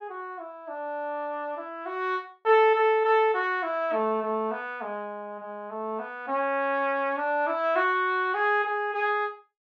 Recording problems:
none

